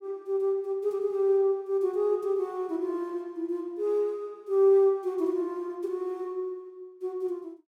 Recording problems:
none

